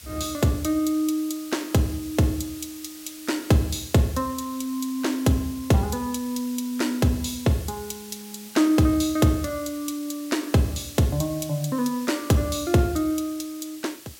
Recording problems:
background hiss; SNR 17 dB

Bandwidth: 16.5 kHz